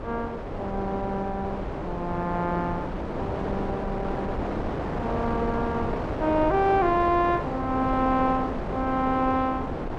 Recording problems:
wind noise; below 740 Hz, SNR 4 dB

